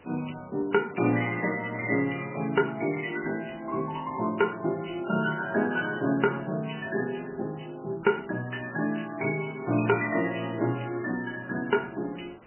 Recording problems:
lossy codec; MP3, log-spectral distance 8 dB, nothing above 3 kHz
hiss; SNR 25 dB

